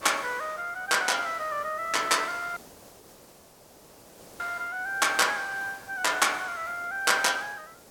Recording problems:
background hiss; SNR 22 dB
audio cutting out; at 2.5 s for 2 s

